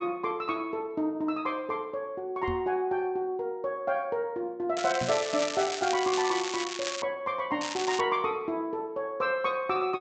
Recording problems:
treble missing; nothing above 8 kHz
microphone bump; at 2.5 s and at 5 s; peak -3 dB vs average level
crackle; from 5 to 7 s and at 7.5 s; loose cable, SNR 6 dB

